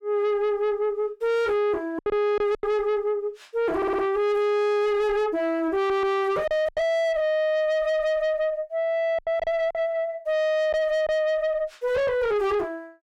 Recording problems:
distortion; soft clipping, signal-to-distortion ratio 5 dB
lost packets; 4% of the sound replaced, filled with silence
stutter; at 4 s and at 6 s

